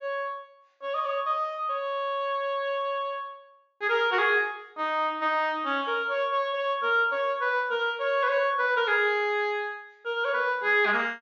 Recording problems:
treble cut off; nothing above 7.3 kHz

